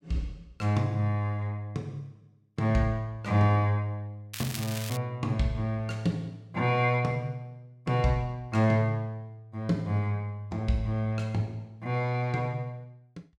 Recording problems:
crackle; at 4.5 s; loose cable, SNR 9 dB

